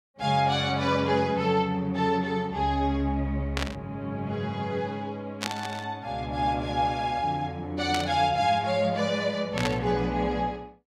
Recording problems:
static burst; 4 times, first at 3.5 s; peak +1 dB vs average level

